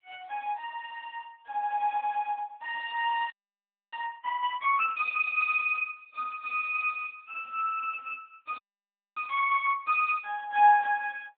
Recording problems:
telephone audio; 520 Hz to 3.3 kHz, AMR-NB
frozen audio; at 3.5 s for 0.5 s and at 8.5 s for 0.5 s

